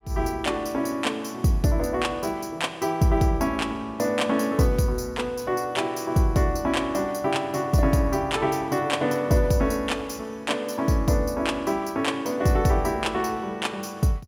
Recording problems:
none

